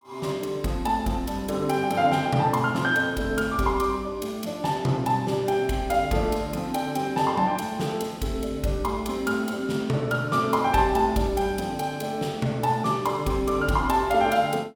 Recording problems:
none

